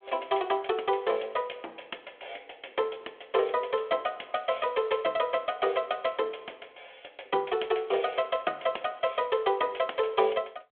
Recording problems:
telephone audio; 300 Hz to 3.4 kHz, G.726

